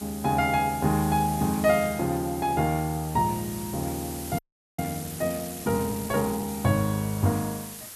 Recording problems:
background hiss; slope 0 dB per octave, SNR 12 dB
frozen audio; at 4.5 s

